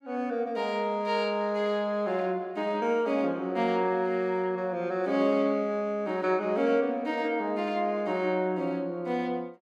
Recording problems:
none

